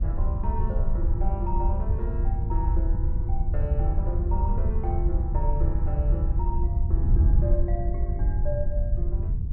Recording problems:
wind on the microphone; below 76 Hz, SNR -9 dB

